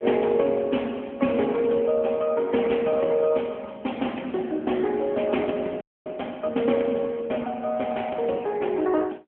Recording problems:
phone line; 220 Hz to 3.4 kHz, AMR-NB
frozen audio; at 6 s

